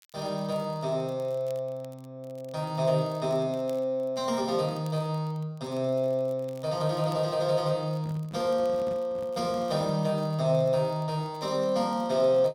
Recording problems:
crackling; vinyl, SNR 30 dB
handling noise; from 8 to 10 s; peak -10 dB vs average level

